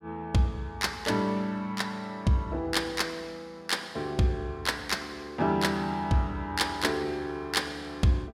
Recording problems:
none

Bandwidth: 16 kHz